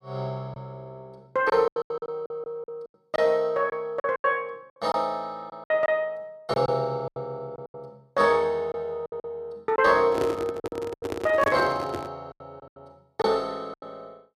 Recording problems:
packet loss; 12% of the sound replaced, filled with silence
microphone handling noise; from 10 to 12 s; peak 0 dB vs average level

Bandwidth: 14.5 kHz